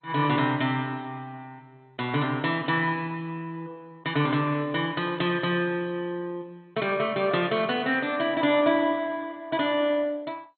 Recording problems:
lossy codec; MP2, log-spectral distance 3 dB, nothing above 4.1 kHz

